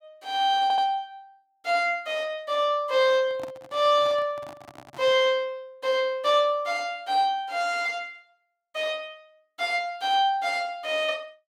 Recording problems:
audio stuttering; at 0.5 s
handling noise; from 3 to 5 s; peak -11 dB vs average level

